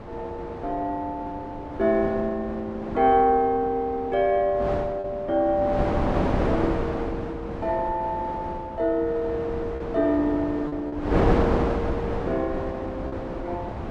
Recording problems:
wind on the microphone; below 670 Hz, SNR 4 dB
lost packets; 1.5% of the sound replaced, filled with repeated pitch periods

